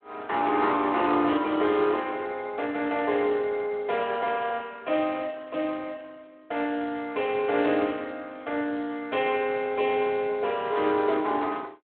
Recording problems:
telephone audio; 260 Hz to 3.8 kHz, Speex

